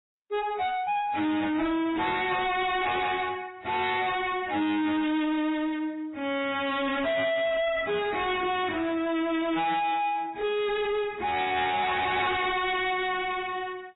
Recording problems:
lossy codec; AAC, then MP3, log-spectral distance 5 dB, nothing above 3.8 kHz
distortion; soft clipping, signal-to-distortion ratio 6 dB

